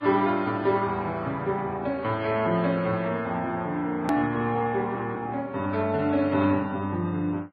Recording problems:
lossy compression; MP3, then Vorbis, log-spectral distance 2 dB, nothing above 13.1 kHz
hard cut with a click; at 4 s

